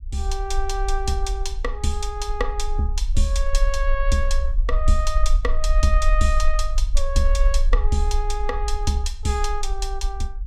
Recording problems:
rumble; below 44 Hz, SNR -1 dB

